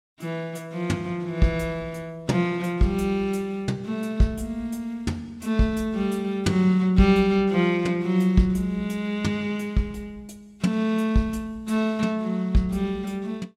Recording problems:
none

